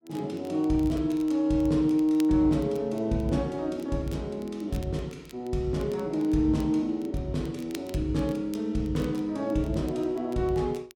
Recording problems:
crackle; vinyl, SNR 26 dB

